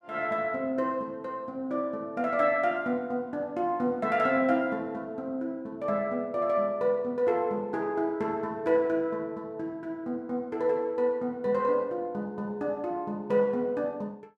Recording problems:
none

